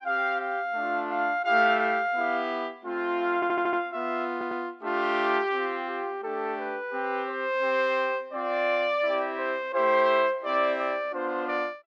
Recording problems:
audio stuttering; at 3.5 s and at 4.5 s

